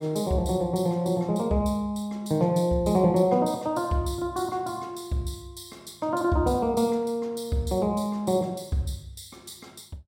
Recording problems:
none

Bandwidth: 16 kHz